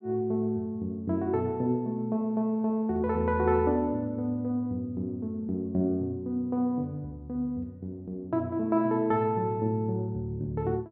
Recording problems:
none

